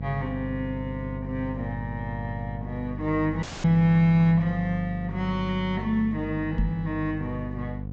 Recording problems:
treble missing; nothing above 8 kHz
electrical hum; 50 Hz, harmonics up to 550 Hz, SNR 8 dB
dropout; at 3.5 s
knock on the microphone; at 6.5 s; peak +2 dB vs average level

